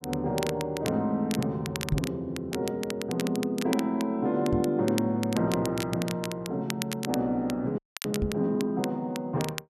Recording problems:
crackle; vinyl, SNR 11 dB
microphone thump; at 2 s, at 4.5 s and at 8 s; peak +5 dB vs average level
audio freezing; at 8 s

